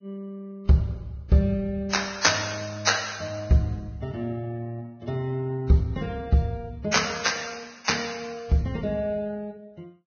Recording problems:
lossy compression; Vorbis, log-spectral distance 5 dB, nothing above 6.5 kHz

